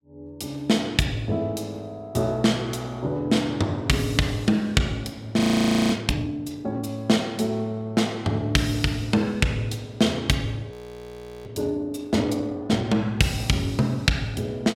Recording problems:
frozen audio; at 5.5 s for 0.5 s and at 11 s for 0.5 s

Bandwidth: 16 kHz